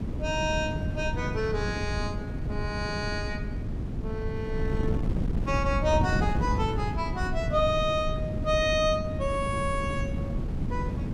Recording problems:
wind on the microphone; below 190 Hz, SNR 2 dB

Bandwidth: 15 kHz